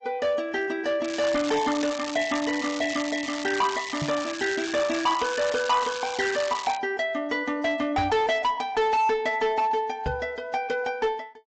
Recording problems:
treble cut off; nothing above 7.3 kHz
lossy compression; AAC, log-spectral distance 4 dB
distorted audio; hard clipping, signal-to-distortion ratio 11 dB
crackle; from 1 to 2 s and from 2 to 7 s; loose cable, SNR 10 dB
microphone thump; at 4 s, at 8 s and at 10 s; peak -2 dB vs average level

